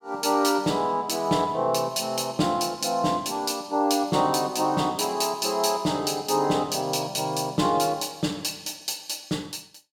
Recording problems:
none

